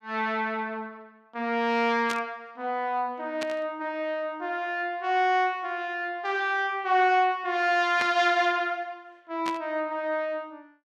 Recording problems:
static burst; 4 times, first at 2 s; peak -2 dB vs average level

